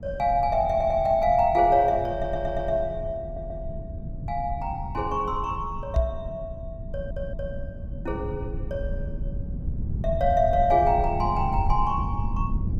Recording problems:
low-frequency rumble; below 120 Hz, SNR 8 dB
audio stuttering; 4 times, first at 0.5 s
knock on the microphone; at 6 s; peak +5 dB vs average level

